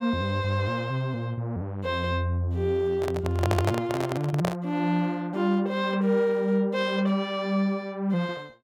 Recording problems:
microphone handling noise; from 3 to 4.5 s; peak +4 dB vs average level

